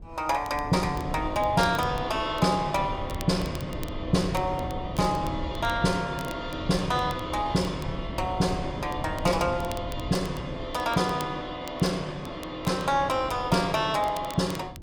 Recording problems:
wind on the microphone; below 150 Hz, SNR 12 dB
crackling; vinyl, SNR 20 dB

